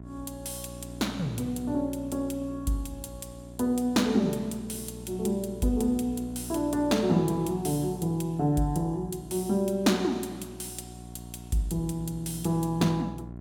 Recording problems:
hum; 60 Hz, harmonics up to 1 kHz, SNR 14 dB

